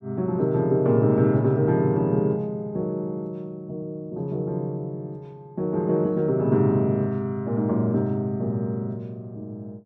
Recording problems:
none

